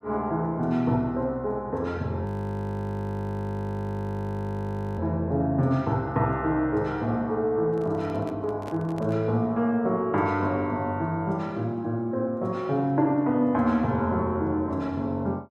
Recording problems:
frozen audio; at 2.5 s for 2.5 s
handling noise; from 7.5 to 9 s; peak -9 dB vs average level

